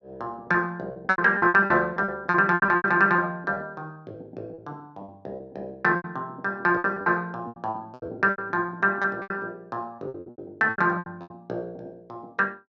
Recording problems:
lost packets; 16% of the sound replaced, filled with repeated pitch periods

